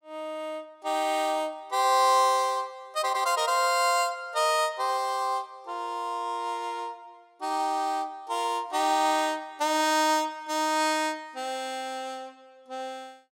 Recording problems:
none

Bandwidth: 16.5 kHz